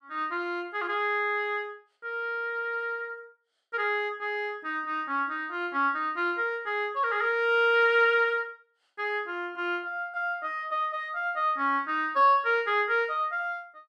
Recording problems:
none

